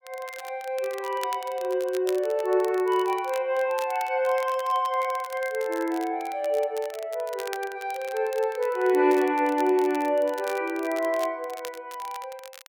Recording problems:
crackling; vinyl, SNR 18 dB

